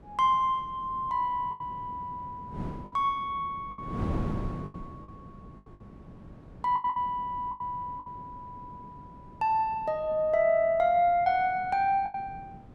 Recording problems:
wind noise; below 300 Hz, SNR 15 dB
packet loss; 6% of the sound replaced, filled with the last packet

